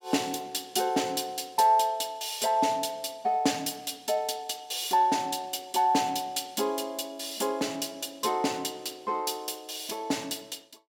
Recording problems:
none

